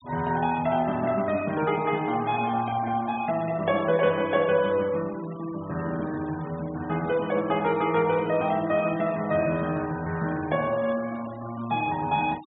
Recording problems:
treble missing; nothing above 4 kHz
noise reduction artefacts; signal-to-artefact ratio 20 dB

